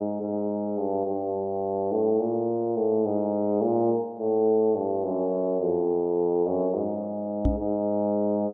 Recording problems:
microphone thump; at 7.5 s; peak +5 dB vs average level

